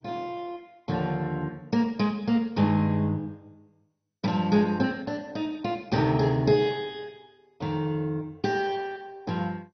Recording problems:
lossy codec; MP2, log-spectral distance 3 dB, nothing above 5.5 kHz

